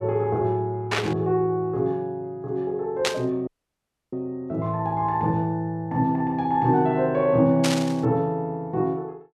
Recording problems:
static burst; at 1 s, at 3 s and at 7.5 s; peak +3 dB vs average level
audio cutting out; at 3.5 s for 0.5 s

